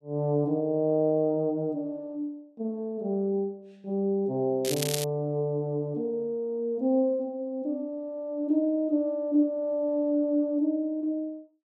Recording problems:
crackling; at 4.5 s; loose cable, SNR 5 dB

